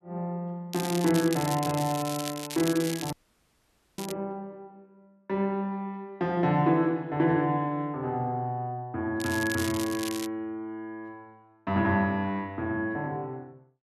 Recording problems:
crackle; from 0.5 to 4 s and from 9 to 10 s; loose cable, SNR 9 dB
audio cutting out; at 3 s for 1 s

